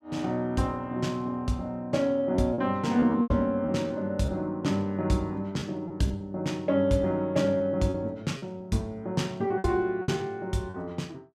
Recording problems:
lost packets; 6% of the sound replaced, filled with repeated pitch periods

